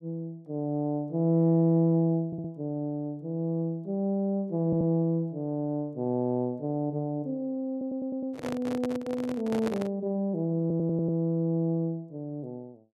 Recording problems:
audio stuttering; 4 times, first at 2.5 s
microphone handling noise; from 8 to 10 s; peak -1 dB vs average level

